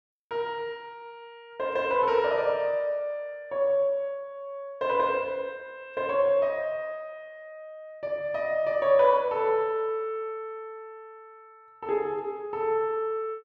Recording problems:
none

